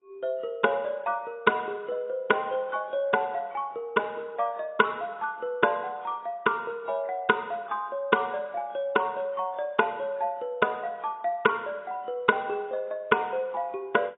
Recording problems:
lossy codec; AAC, log-spectral distance 2 dB, nothing above 3.7 kHz

